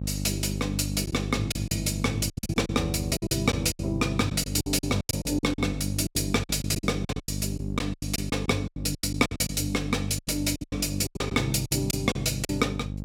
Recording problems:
hum; 50 Hz, harmonics up to 600 Hz, SNR 5 dB
packet loss; 16% of the sound replaced, filled with silence

